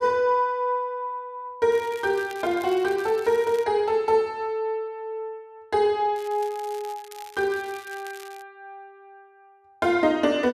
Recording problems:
crackling; from 1.5 to 3.5 s and from 6 to 8.5 s; loose cable, SNR 22 dB

